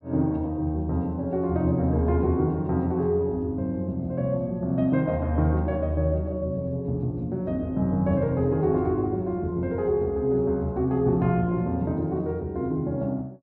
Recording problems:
none

